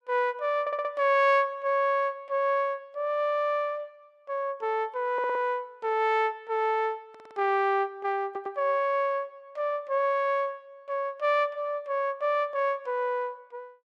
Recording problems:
audio stuttering; 4 times, first at 0.5 s

